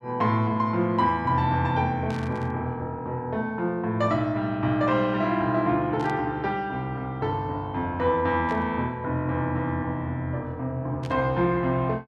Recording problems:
static burst; 4 times, first at 2 s; peak -12 dB vs average level

